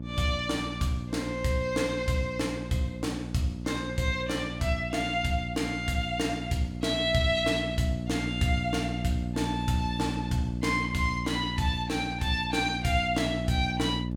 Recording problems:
electrical hum; 60 Hz, harmonics up to 600 Hz, SNR 6 dB

